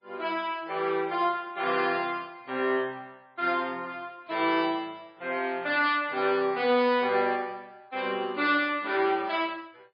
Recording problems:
lossy codec; MP3, log-spectral distance 2 dB, nothing above 4.4 kHz

